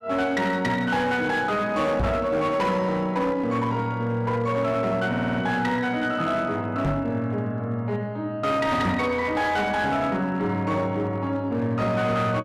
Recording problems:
distorted audio; hard clipping, signal-to-distortion ratio 11 dB
microphone bump; at 2 s, at 7 s and at 9 s; peak +3 dB vs average level
stutter; at 5 s

